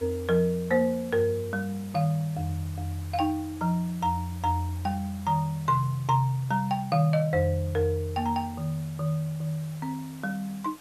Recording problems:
hiss; slope -3 dB per octave, SNR 21 dB

